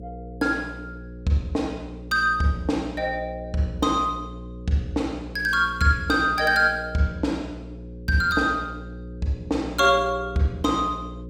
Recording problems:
hum; 60 Hz, harmonics up to 540 Hz, SNR 14 dB

